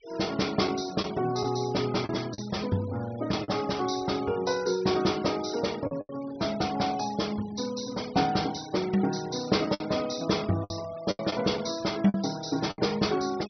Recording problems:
treble cut off; nothing above 6 kHz
denoising artefacts; signal-to-artefact ratio 17 dB
packet loss; 5% of the sound replaced, filled with the last packet

